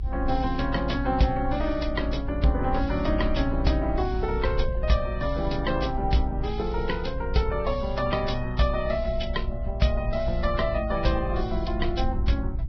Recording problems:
codec artefacts; Vorbis, log-spectral distance 3 dB, nothing above 5.7 kHz
low-frequency rumble; below 58 Hz, SNR 5 dB

